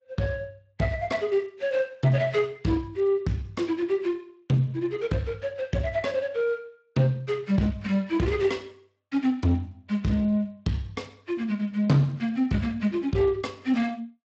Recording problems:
codec artefacts; AAC, then Speex, log-spectral distance 3 dB
distorted audio; soft clipping, signal-to-distortion ratio 10 dB

